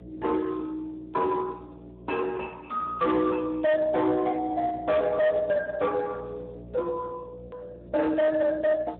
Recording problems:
treble missing; nothing above 4 kHz
lossy codec; Speex, log-spectral distance 3 dB
distorted audio; hard clipping, uneven, signal-to-distortion ratio 10 dB
mains hum; 60 Hz, harmonics up to 660 Hz, SNR 20 dB
hard cut with a click; at 7.5 s

